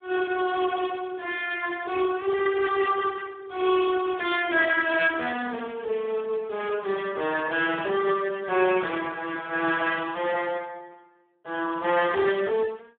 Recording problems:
phone line; 260 Hz to 2.7 kHz, Speex

